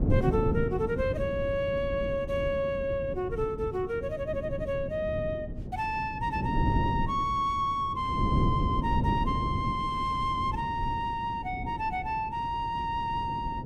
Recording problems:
wind on the microphone; below 240 Hz, SNR 4 dB

